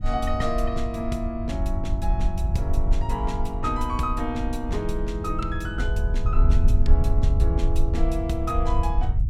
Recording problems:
rumble; below 70 Hz, SNR -3 dB

